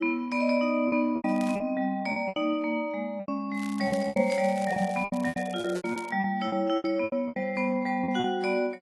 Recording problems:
lossy compression; AAC, log-spectral distance 2 dB
lost packets; 14% of the sound replaced, filled with repeated pitch periods
crackle; at 1.5 s and from 3.5 to 6 s; loose cable, SNR 19 dB

